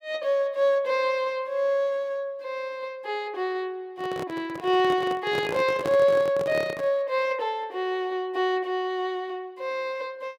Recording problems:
handling noise; from 4 to 7 s; peak -1 dB vs average level

